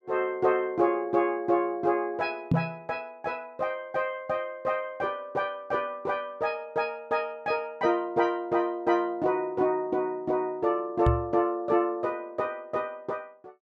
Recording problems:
microphone bump; at 2.5 s and at 11 s; peak +7 dB vs average level

